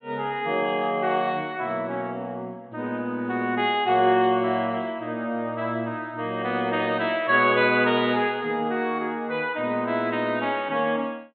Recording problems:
low-pass filter; nothing above 4 kHz

